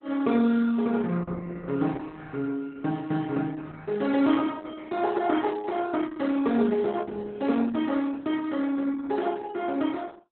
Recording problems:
lossy codec; Opus, log-spectral distance 3 dB, nothing above 3.6 kHz

